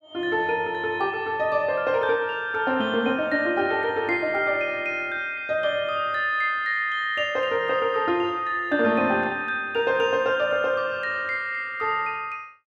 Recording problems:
none

